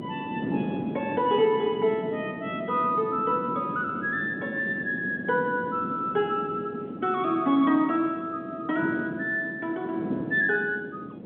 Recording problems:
telephone audio; 190 Hz to 3.7 kHz, G.711
wind on the microphone; below 370 Hz, SNR 8 dB

